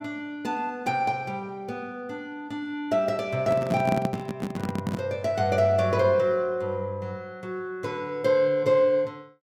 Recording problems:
handling noise; from 3.5 to 5 s; peak +3 dB vs average level

